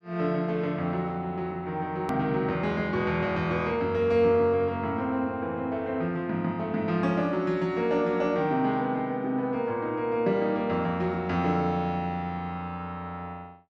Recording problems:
edit click; at 2 s

